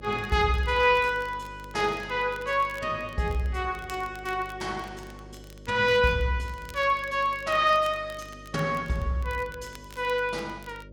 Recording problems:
electrical hum; 50 Hz, harmonics up to 600 Hz, SNR 20 dB
crackle; vinyl, SNR 25 dB

